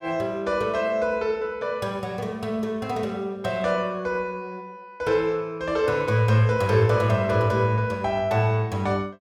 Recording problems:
none

